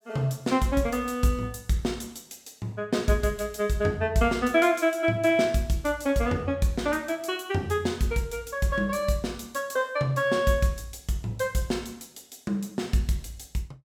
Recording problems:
none

